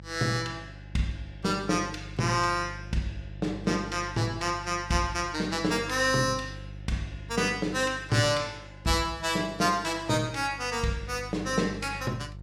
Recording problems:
electrical hum; 50 Hz, harmonics up to 500 Hz, SNR 15 dB

